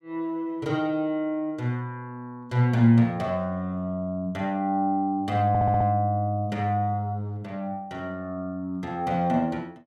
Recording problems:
stutter; at 5.5 s

